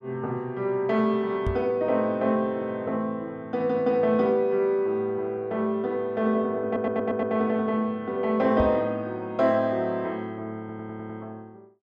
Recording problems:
microphone thump; at 1.5 s and at 8.5 s; peak 0 dB vs average level
audio stuttering; at 6.5 s and at 11 s

